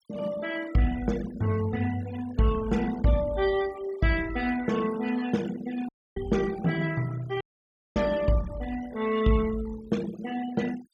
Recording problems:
denoising artefacts; signal-to-artefact ratio 16 dB
dropout; at 6 s and at 7.5 s for 0.5 s

